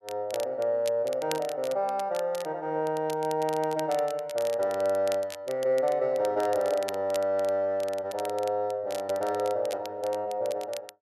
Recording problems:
crackle; vinyl, SNR 17 dB

